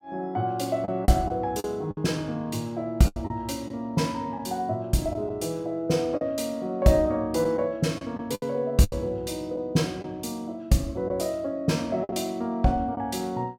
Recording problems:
packet loss; 5% of the sound replaced, filled with the last packet

